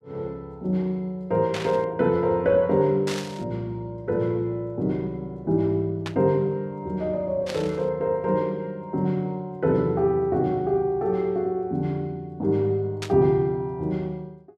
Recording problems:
burst of static; 5 times, first at 1.5 s; peak -4 dB vs average level

